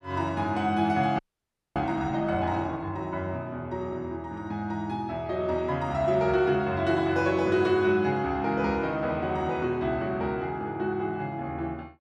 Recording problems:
frozen audio; at 1 s for 0.5 s

